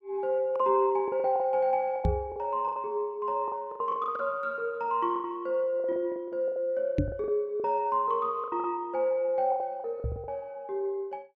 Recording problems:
packet loss; 12% of the sound replaced, filled with the last packet
knock on the microphone; at 2 s, at 7 s and at 10 s; peak +6 dB vs average level

